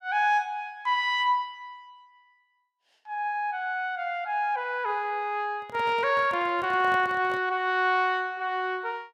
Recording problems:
microphone handling noise; from 5.5 to 7.5 s; peak -10 dB vs average level

